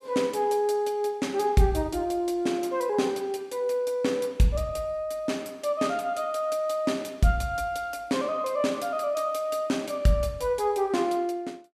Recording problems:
none

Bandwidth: 14.5 kHz